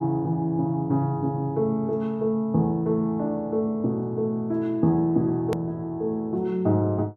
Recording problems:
hard cut with a click; at 5.5 s

